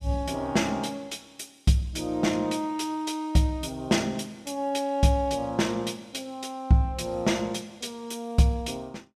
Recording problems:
none

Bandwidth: 14.5 kHz